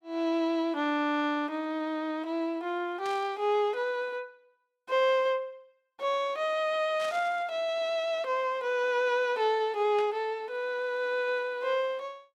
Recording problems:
burst of static; at 3 s, at 7 s and at 10 s; peak -10 dB vs average level

